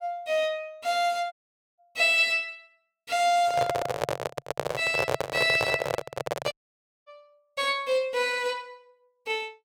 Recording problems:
dropout; at 1.5 s and at 6.5 s for 0.5 s
handling noise; from 3.5 to 6.5 s; peak +3 dB vs average level

